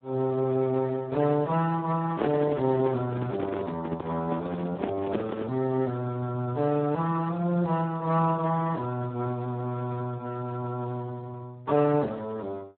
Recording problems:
phone line; 190 Hz to 2.2 kHz, Speex
microphone handling noise; from 2 to 5.5 s; peak +3 dB vs average level

